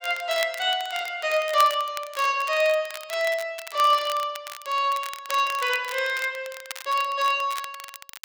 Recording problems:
crackling; vinyl, SNR 14 dB

